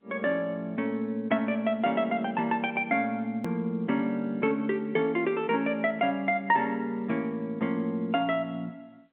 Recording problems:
telephone audio; 170 Hz to 3.7 kHz, G.711
edit click; at 3.5 s

